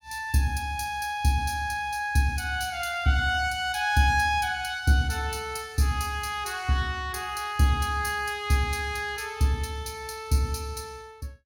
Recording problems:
none

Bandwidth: 17 kHz